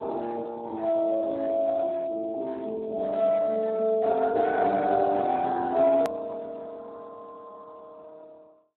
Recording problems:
phone line; 220 Hz to 3.8 kHz, Speex
edit click; at 6 s

